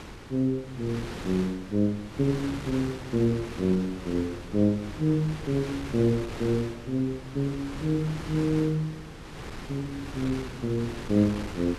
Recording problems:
wind on the microphone; below 1.5 kHz, SNR 11 dB

